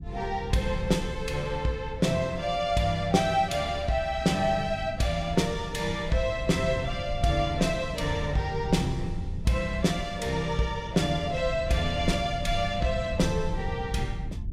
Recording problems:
low-frequency rumble; below 110 Hz, SNR 10 dB

